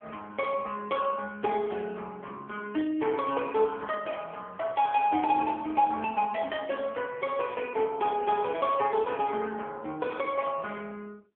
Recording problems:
phone line; 280 Hz to 3.4 kHz, AMR-NB

